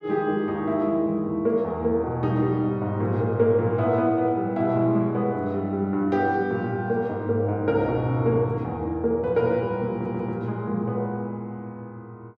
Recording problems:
stutter; at 10 s

